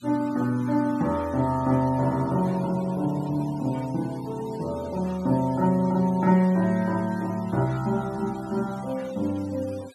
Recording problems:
denoising artefacts; signal-to-artefact ratio 22 dB

